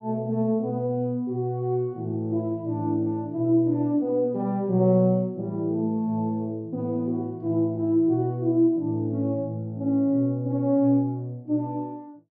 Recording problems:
none

